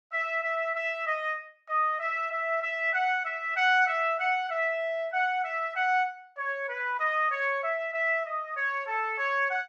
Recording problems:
none

